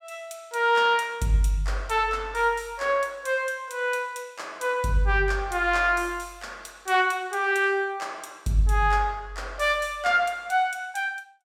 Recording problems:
none

